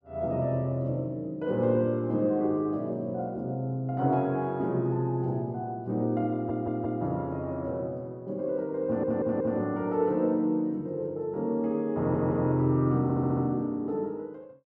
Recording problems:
audio stuttering; 4 times, first at 6.5 s

